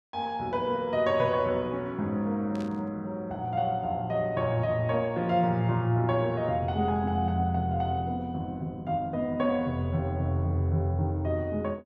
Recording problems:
static burst; at 2.5 s; peak -15 dB vs average level

